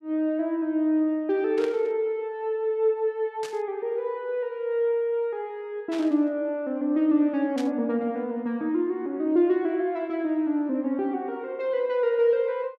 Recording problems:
burst of static; 4 times, first at 1.5 s; peak -9 dB vs average level

